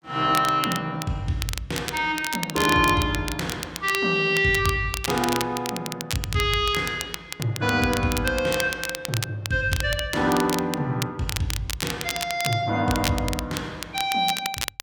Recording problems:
crackling; vinyl, SNR 8 dB

